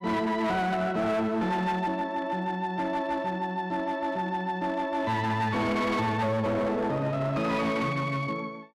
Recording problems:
distortion; hard clipping, signal-to-distortion ratio 10 dB

